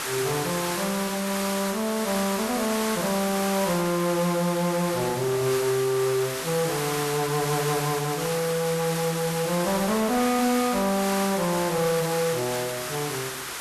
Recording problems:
distorted audio; soft clipping, signal-to-distortion ratio 10 dB
background hiss; SNR 5 dB

